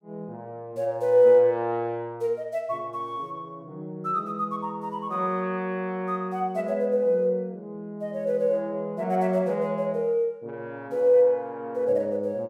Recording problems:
none

